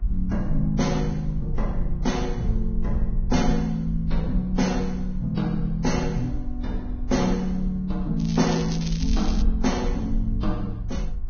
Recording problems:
lossy codec; Vorbis, log-spectral distance 2 dB, nothing above 6.5 kHz
hum; 60 Hz, harmonics up to 1.8 kHz, SNR 26 dB
low-frequency rumble; below 52 Hz, SNR 5 dB
crackling; from 8 to 9.5 s; loose cable, SNR 11 dB

